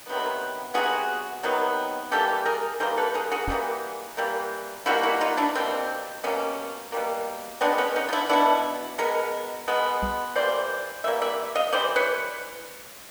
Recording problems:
hiss; slope -1 dB per octave, SNR 16 dB
microphone bump; at 3.5 s and at 10 s; peak -2 dB vs average level

